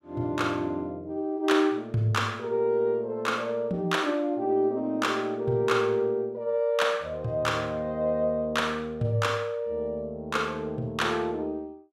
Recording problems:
none

